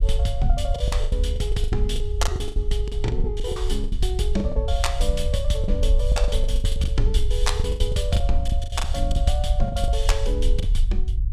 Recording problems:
rumble; below 58 Hz, SNR -3 dB
lost packets; 15% of the sound replaced, filled with the last packet

